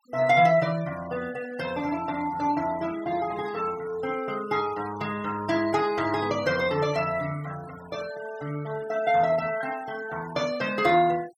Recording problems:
denoising artefacts; signal-to-artefact ratio 19 dB

